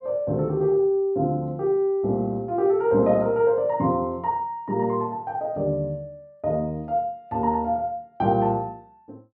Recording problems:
none

